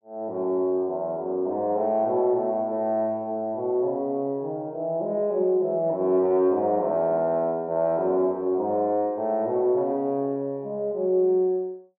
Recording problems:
none

